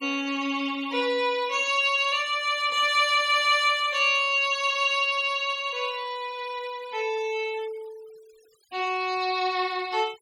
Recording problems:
noise reduction artefacts; signal-to-artefact ratio 24 dB

